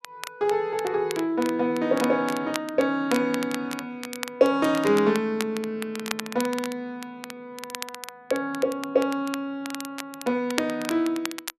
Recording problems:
crackle; vinyl, SNR 12 dB

